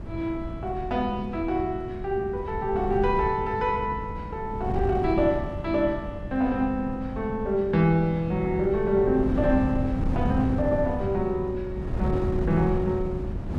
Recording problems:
wind on the microphone; below 200 Hz, SNR 6 dB

